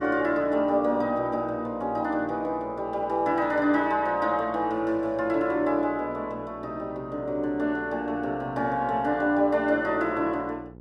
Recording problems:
electrical hum; 60 Hz, harmonics up to 1 kHz, SNR 22 dB

